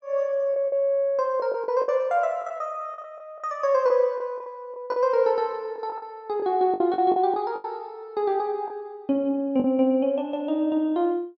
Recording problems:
packet loss; 8% of the sound replaced, filled with the last packet

